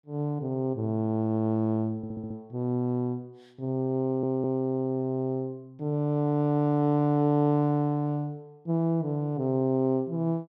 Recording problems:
stutter; at 2 s and at 4 s

